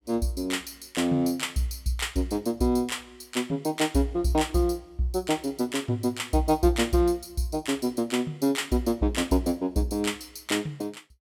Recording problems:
none

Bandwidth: 18 kHz